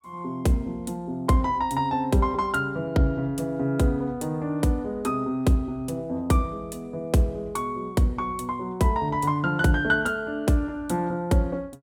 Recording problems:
none

